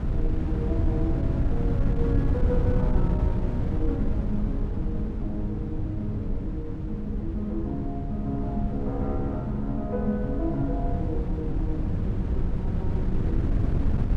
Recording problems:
wind noise; below 130 Hz, SNR -3 dB

